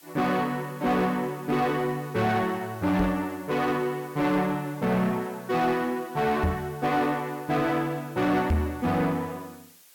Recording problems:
distortion; soft clipping, signal-to-distortion ratio 12 dB
hiss; slope +1 dB per octave, SNR 24 dB
microphone bump; at 3 s, at 6.5 s and at 8.5 s; peak +5 dB vs average level

